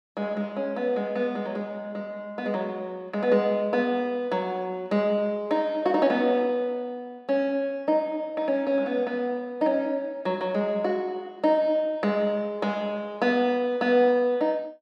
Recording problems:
none

